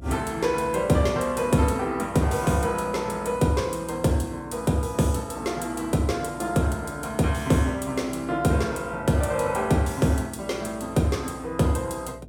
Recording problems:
electrical hum; 60 Hz, harmonics up to 660 Hz, SNR 21 dB

